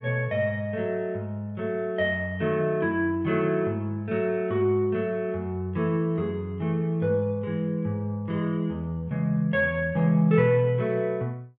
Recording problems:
none

